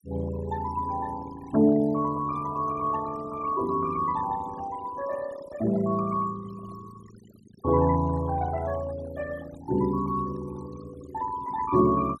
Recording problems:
noise reduction artefacts; signal-to-artefact ratio 18 dB

